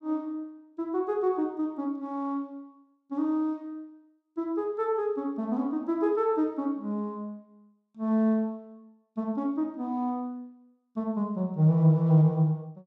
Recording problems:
none

